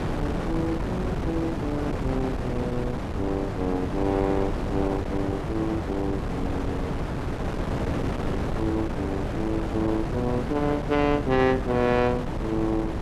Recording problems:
wind noise; below 520 Hz, SNR 2 dB

